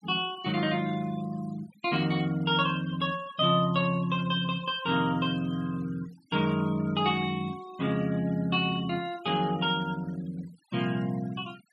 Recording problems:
denoising artefacts; signal-to-artefact ratio 21 dB

